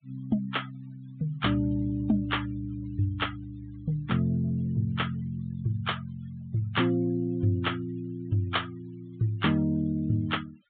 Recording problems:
treble missing; nothing above 4 kHz
denoising artefacts; signal-to-artefact ratio 24 dB

